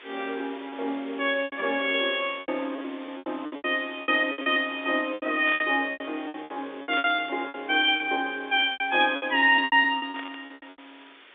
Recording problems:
telephone audio; 260 Hz to 3.7 kHz, G.711
hiss; SNR 22 dB
packet loss; 17% of the sound replaced, filled with repeated pitch periods
burst of static; 4 times, first at 2.5 s; peak -8 dB vs average level

